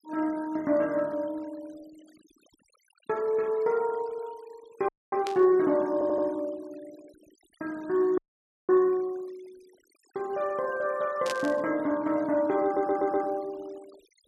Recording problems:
noise reduction artefacts; signal-to-artefact ratio 26 dB
audio freezing; at 5 s and at 8 s for 0.5 s
static burst; at 5.5 s and at 11 s; peak -2 dB vs average level
audio stuttering; at 6 s and at 13 s

